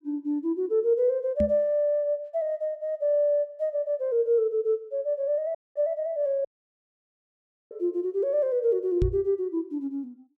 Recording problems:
knock on the microphone; at 1.5 s and at 9 s; peak +3 dB vs average level
dropout; at 5.5 s and at 6.5 s for 1.5 s

